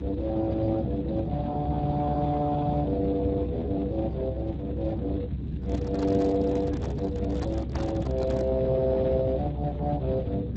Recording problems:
lossy codec; Speex, log-spectral distance 2 dB
low-frequency rumble; below 200 Hz, strongest tone 66 Hz, SNR 4 dB
handling noise; from 5.5 to 8.5 s; peak -5 dB vs average level

